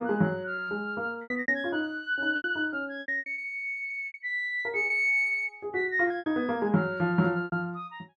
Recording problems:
lost packets; 10% of the sound replaced, filled with repeated pitch periods

